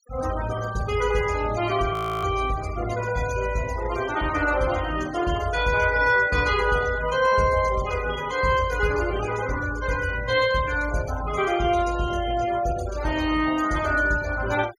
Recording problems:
noise reduction artefacts; signal-to-artefact ratio 16 dB
frozen audio; at 2 s

